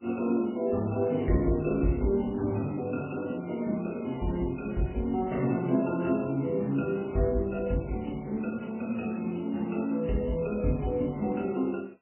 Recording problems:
codec artefacts; MP3, log-spectral distance 5 dB, nothing above 2.7 kHz

